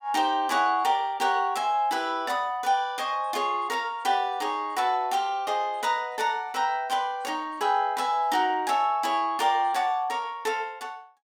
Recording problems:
none

